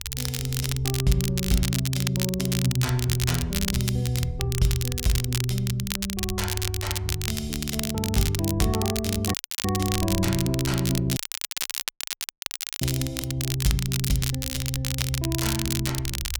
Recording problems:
rumble; below 78 Hz, SNR 11 dB
crackling; vinyl, SNR 3 dB
dropout; at 9.5 s and at 11 s for 1.5 s

